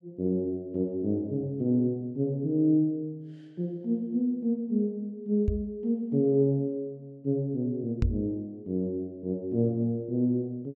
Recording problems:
microphone thump; at 5.5 s and at 8 s; peak +5 dB vs average level

